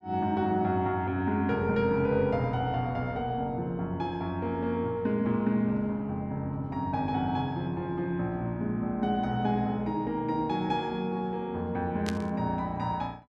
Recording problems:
burst of static; at 12 s; peak -3 dB vs average level

